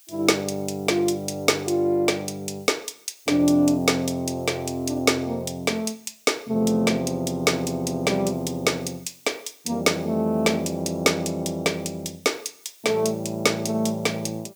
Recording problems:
background hiss; slope +4 dB per octave, SNR 27 dB

